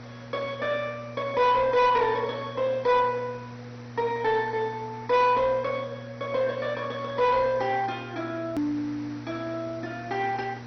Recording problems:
codec artefacts; MP2, log-spectral distance 5 dB
distorted audio; soft clipping, signal-to-distortion ratio 10 dB
electrical hum; 60 Hz, harmonics up to 960 Hz, SNR 16 dB
hiss; SNR 22 dB
hard cut with a click; at 8.5 s

